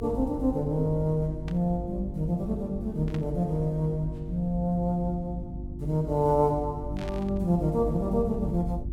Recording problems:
hum; 50 Hz, harmonics up to 350 Hz, SNR 12 dB
rumble; below 88 Hz, strongest tone 54 Hz, SNR 11 dB
static burst; at 1.5 s, at 3 s and at 7 s; peak -11 dB vs average level

